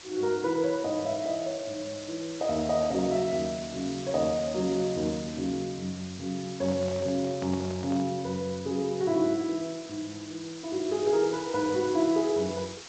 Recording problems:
lossy codec; G.722, log-spectral distance 10 dB
background hiss; slope 0 dB per octave, SNR 14 dB
microphone handling noise; from 6.5 to 8 s; peak -9 dB vs average level

